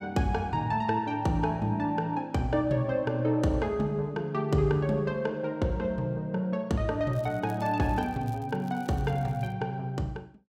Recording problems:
crackling; from 7 to 9.5 s; loose cable, SNR 28 dB

